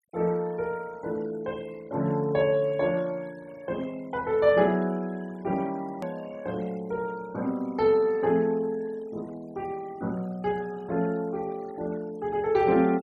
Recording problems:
noise reduction artefacts; signal-to-artefact ratio 24 dB
click at an edit; at 6 s

